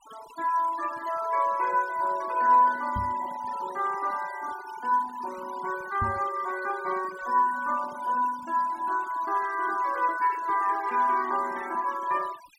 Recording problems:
denoising artefacts; signal-to-artefact ratio 18 dB
knock on the microphone; at 3 s and at 6 s; peak -2 dB vs average level

